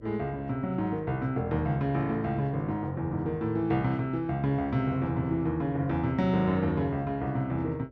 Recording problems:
electrical hum; 50 Hz, harmonics up to 600 Hz, SNR 26 dB

